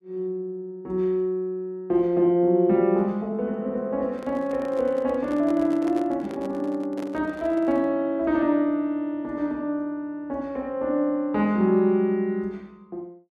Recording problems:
handling noise; from 4 to 8 s; peak -9 dB vs average level

